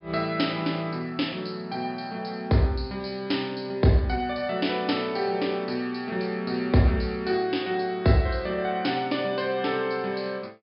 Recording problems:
treble cut off; nothing above 5.5 kHz

